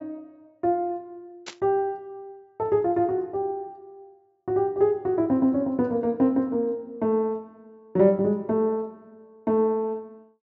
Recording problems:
low-pass filter; nothing above 8 kHz
static burst; at 1.5 s; peak -7 dB vs average level

